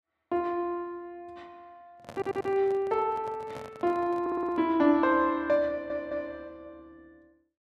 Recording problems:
microphone handling noise; from 2 to 4.5 s; peak -11 dB vs average level
audio stuttering; at 2 s, at 4 s and at 5.5 s

